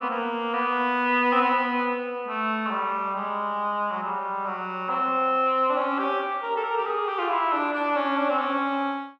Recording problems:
none

